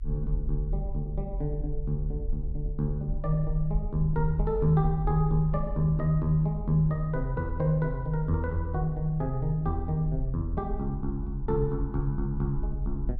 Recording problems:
rumble; below 46 Hz, strongest tone 42 Hz, SNR 7 dB

